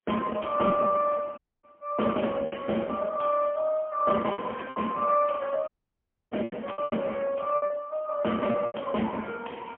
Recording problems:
phone line; 190 Hz to 3.3 kHz, AMR-NB, then MP3
lost packets; 7% of the sound replaced, filled with repeated pitch periods
audio cutting out; at 1.5 s and at 5.5 s for 0.5 s

